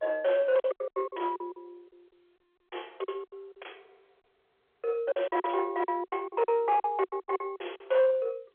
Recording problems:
telephone audio; 340 Hz to 3.4 kHz, G.711
distorted audio; soft clipping, signal-to-distortion ratio 11 dB
packet loss; 17% of the sound replaced, filled with silence

